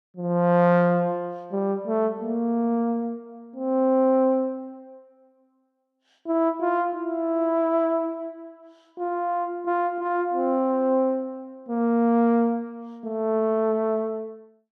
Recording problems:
none

